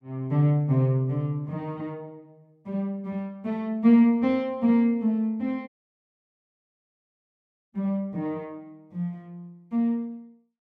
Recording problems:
dropout; at 5.5 s for 2 s

